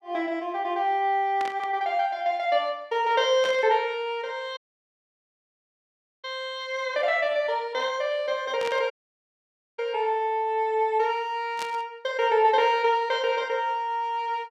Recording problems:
static burst; 4 times, first at 1.5 s; peak -6 dB vs average level
dropout; at 4.5 s for 1.5 s and at 9 s for 1 s

